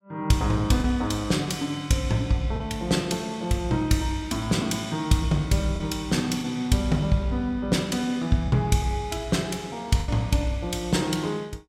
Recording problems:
lost packets; 2% of the sound replaced, filled with the last packet

